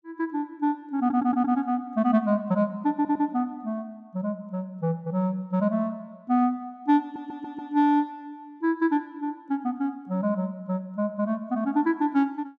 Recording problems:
stutter; at 1 s, at 3 s and at 7 s

